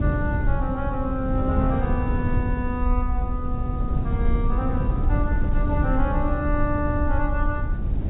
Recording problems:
low-pass filter; nothing above 3.8 kHz
rumble; below 64 Hz, SNR 2 dB
wind noise; below 130 Hz, SNR -2 dB

